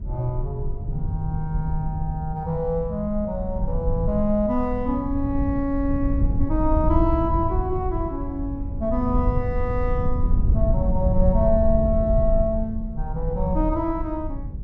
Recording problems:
low-frequency rumble; below 88 Hz, SNR 1 dB

